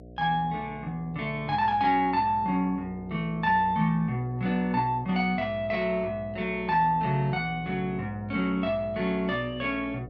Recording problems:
hum; 60 Hz, harmonics up to 720 Hz, SNR 18 dB

